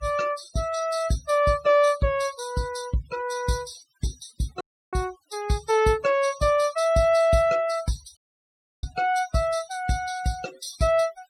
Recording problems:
denoising artefacts; signal-to-artefact ratio 19 dB
dropout; at 4.5 s and at 8 s for 0.5 s

